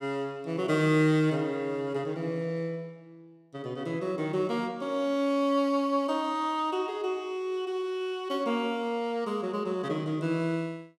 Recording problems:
none

